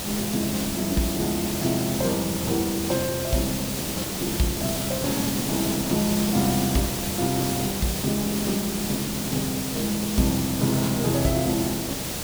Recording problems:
hiss; SNR 2 dB

